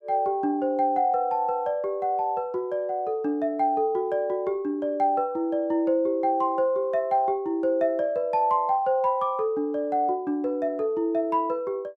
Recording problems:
none

